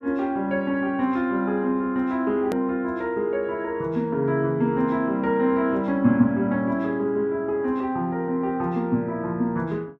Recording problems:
click at an edit; at 2.5 s

